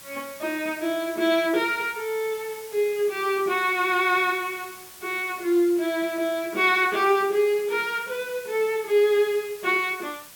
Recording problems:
background hiss; slope +1 dB per octave, SNR 18 dB

